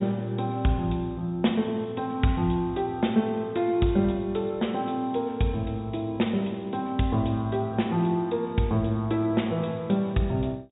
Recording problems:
treble cut off; nothing above 4 kHz

